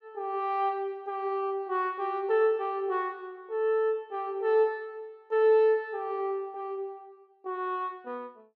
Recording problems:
none

